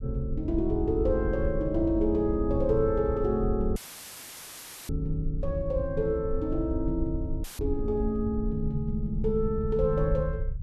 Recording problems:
rumble; below 72 Hz, SNR 6 dB
dropout; at 4 s for 1 s and at 7.5 s; filled with static

